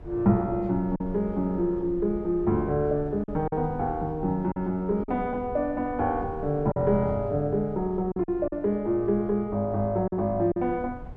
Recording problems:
rumble; below 120 Hz, SNR 17 dB
lost packets; 4% of the sound replaced, filled with silence

